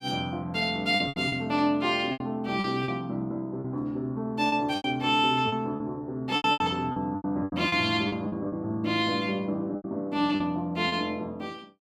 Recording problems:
packet loss; 11% of the sound replaced, filled with repeated pitch periods

